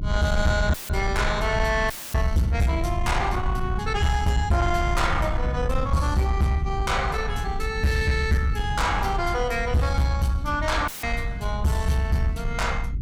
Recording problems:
distortion; soft clipping, signal-to-distortion ratio 11 dB
low-frequency rumble; below 98 Hz, SNR 5 dB
audio cutting out; at 0.5 s, at 2 s and at 11 s; filled with static

